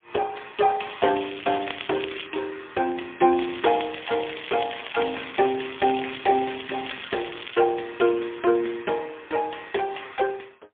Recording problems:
telephone audio; 280 Hz to 3.4 kHz, AMR-NB, then MP3
crackling; from 1 to 2.5 s and from 3.5 to 7.5 s; loose cable, SNR 11 dB

